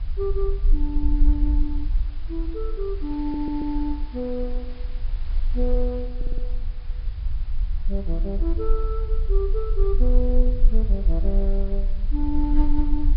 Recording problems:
treble missing; nothing above 5.2 kHz
background hiss; SNR 22 dB
low-frequency rumble; below 42 Hz, strongest tone 24 Hz, SNR -3 dB
audio stuttering; at 3 s and at 6 s

